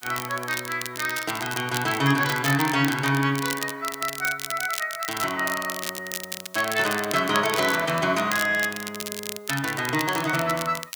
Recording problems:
background hiss; SNR 29 dB
crackle; vinyl, SNR 8 dB

